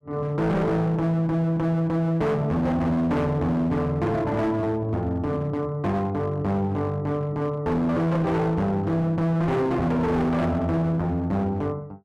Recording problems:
distortion; hard clipping, signal-to-distortion ratio 7 dB

